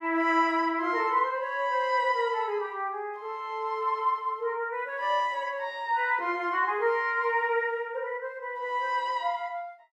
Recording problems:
none

